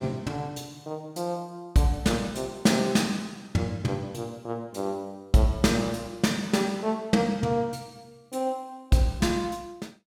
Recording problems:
none

